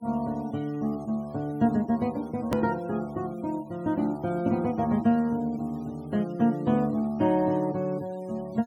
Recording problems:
denoising artefacts; signal-to-artefact ratio 26 dB
edit click; at 2.5 s

